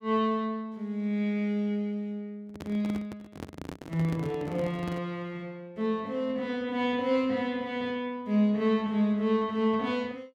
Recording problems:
handling noise; from 2.5 to 5 s; peak -4 dB vs average level

